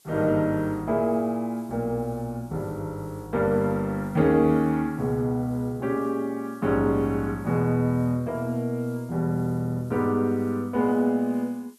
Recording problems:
background hiss; SNR 30 dB

